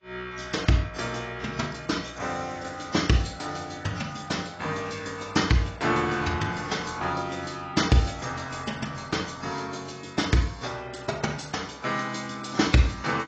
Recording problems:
lossy codec; AAC, log-spectral distance 6 dB, nothing above 7.6 kHz

